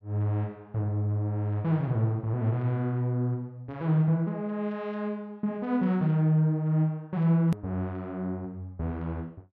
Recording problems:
click at an edit; at 7.5 s

